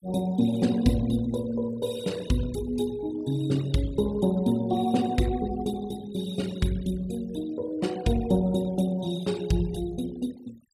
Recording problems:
denoising artefacts; signal-to-artefact ratio 20 dB

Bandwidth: 15 kHz